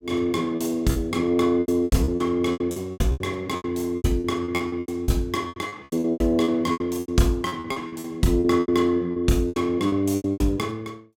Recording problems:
lost packets; 20% of the sound replaced, filled with repeated pitch periods

